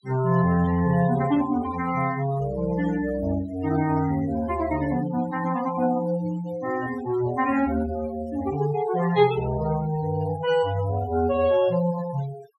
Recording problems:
noise reduction artefacts; signal-to-artefact ratio 15 dB

